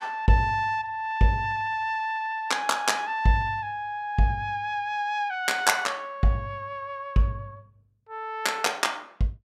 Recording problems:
none

